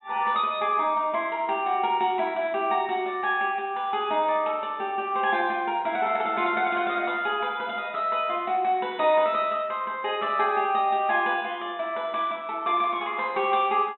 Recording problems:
treble missing; nothing above 3.8 kHz

